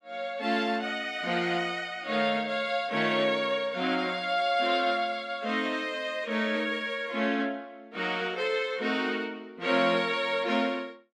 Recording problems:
none

